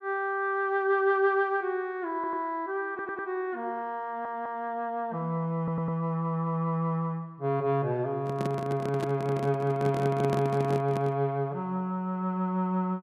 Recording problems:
audio stuttering; 4 times, first at 2 s
microphone handling noise; from 8 to 11 s; peak +1 dB vs average level

